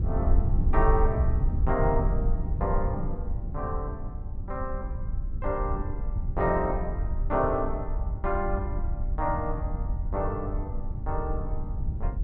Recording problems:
rumble; below 78 Hz, SNR 1 dB
wind noise; below 70 Hz, SNR 5 dB

